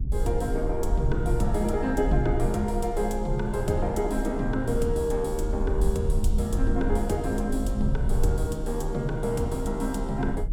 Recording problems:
low-frequency rumble; below 58 Hz, SNR 3 dB

